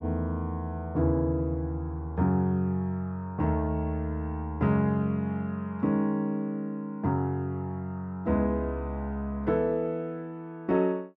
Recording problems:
none

